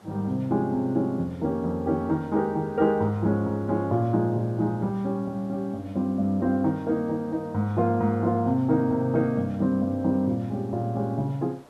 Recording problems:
background hiss; slope -7 dB per octave, SNR 27 dB

